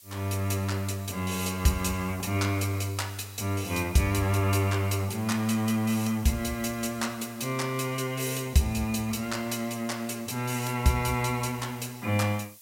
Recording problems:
background hiss; SNR 20 dB

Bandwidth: 16 kHz